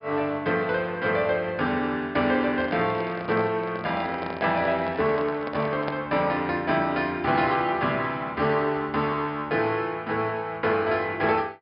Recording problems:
treble missing; nothing above 5.5 kHz
handling noise; from 2.5 to 6 s; peak -2 dB vs average level

